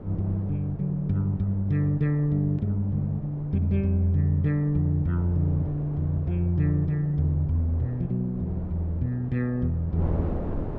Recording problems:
wind noise; below 360 Hz, SNR 13 dB

